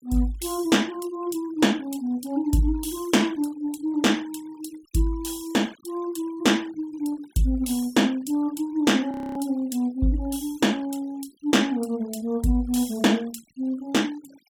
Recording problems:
denoising artefacts; signal-to-artefact ratio 24 dB
frozen audio; at 9 s

